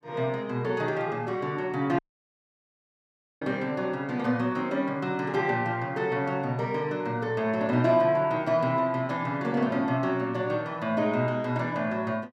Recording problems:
dropout; at 2 s for 1.5 s

